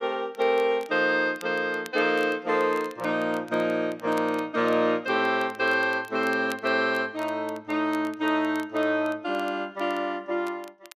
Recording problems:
crackle; vinyl, SNR 25 dB

